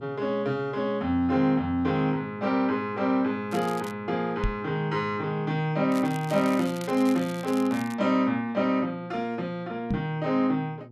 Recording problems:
hum; 60 Hz, harmonics up to 840 Hz, SNR 22 dB
crackling; at 3.5 s and from 6 to 8 s; loose cable, SNR 18 dB
knock on the microphone; at 4.5 s and at 10 s; peak +2 dB vs average level

